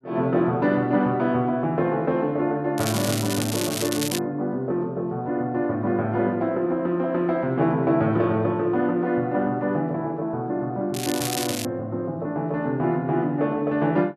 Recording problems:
crackling; from 3 to 4 s and at 11 s; loose cable, SNR 6 dB

